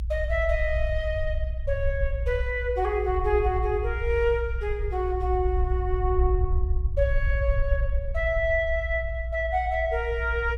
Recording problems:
rumble; below 62 Hz, SNR 2 dB

